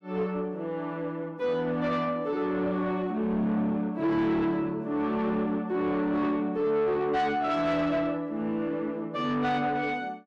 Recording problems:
distorted audio; soft clipping, signal-to-distortion ratio 12 dB

